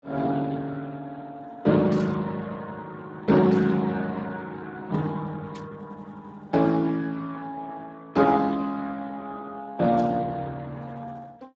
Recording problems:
codec artefacts; Speex, log-spectral distance 3 dB
burst of static; 4 times, first at 2 s; peak -15 dB vs average level

